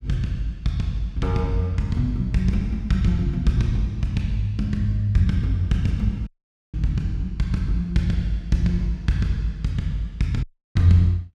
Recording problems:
dropout; at 6.5 s and at 10 s

